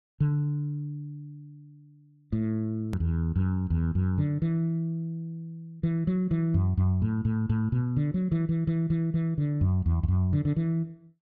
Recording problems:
edit click; at 3 s

